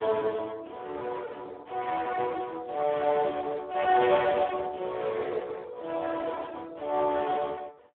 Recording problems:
phone line; 320 Hz to 2.2 kHz, Speex

